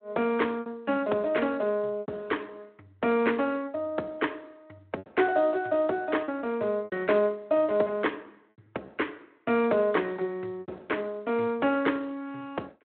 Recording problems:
phone line; 240 Hz to 3.3 kHz, Speex
lost packets; 5% of the sound replaced, filled with repeated pitch periods

